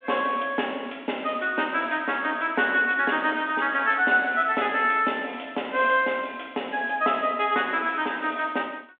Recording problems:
telephone audio; 190 Hz to 3.4 kHz, G.726

